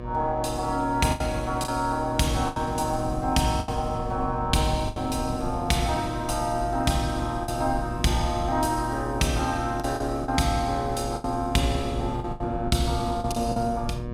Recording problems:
hum; 60 Hz, harmonics up to 1.8 kHz, SNR 9 dB
rumble; below 130 Hz, SNR 11 dB
packet loss; 6% of the sound replaced, filled with the last packet

